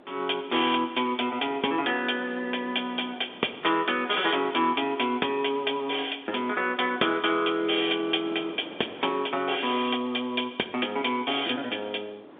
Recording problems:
phone line; 260 Hz to 3.7 kHz, G.711
wind noise; below 870 Hz, SNR 20 dB

